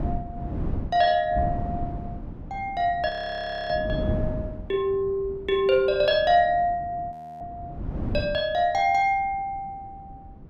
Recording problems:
wind on the microphone; below 240 Hz, SNR 10 dB
audio freezing; at 3 s for 0.5 s and at 7 s

